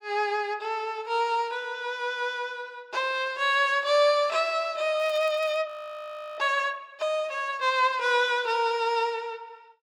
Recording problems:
crackling; at 5 s; loose cable, SNR 25 dB
audio freezing; at 5.5 s for 0.5 s

